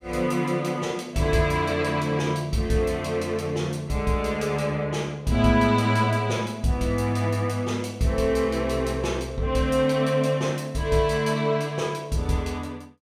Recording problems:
none

